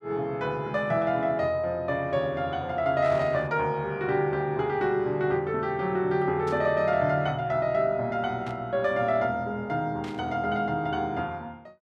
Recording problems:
burst of static; 4 times, first at 3 s; peak -12 dB vs average level

